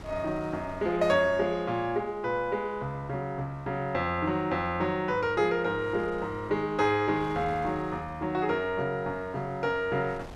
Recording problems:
wind on the microphone; below 840 Hz, SNR 21 dB

